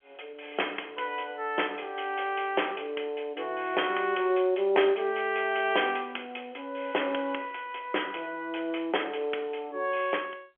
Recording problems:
phone line; 300 Hz to 3.3 kHz, G.711

